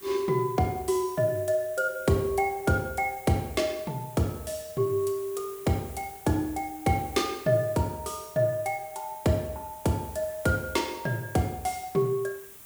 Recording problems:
background hiss; slope -2 dB per octave, SNR 17 dB

